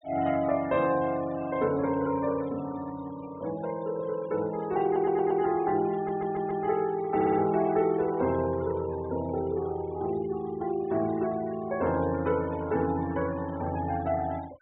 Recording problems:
treble missing; nothing above 4 kHz
noise reduction artefacts; signal-to-artefact ratio 20 dB
audio stuttering; at 5 s, at 6 s and at 7 s

